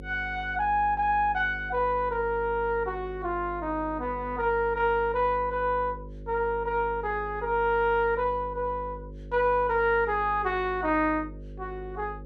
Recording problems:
hum; 50 Hz, harmonics up to 550 Hz, SNR 15 dB

